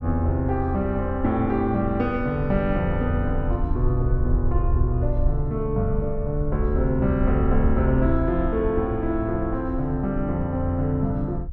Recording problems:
rumble; below 66 Hz, SNR 6 dB

